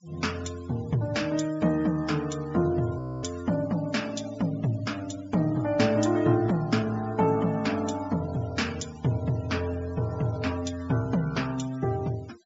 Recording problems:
treble cut off; nothing above 7.4 kHz
noise reduction artefacts; signal-to-artefact ratio 20 dB
audio freezing; at 3 s

